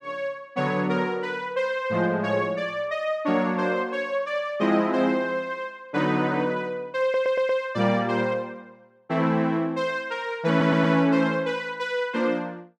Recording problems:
stutter; at 7 s and at 10 s

